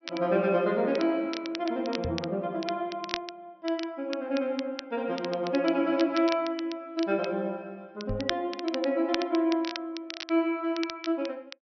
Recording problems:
low-pass filter; nothing above 5.9 kHz
crackle; vinyl, SNR 12 dB
microphone thump; at 2 s and at 8 s; peak -2 dB vs average level

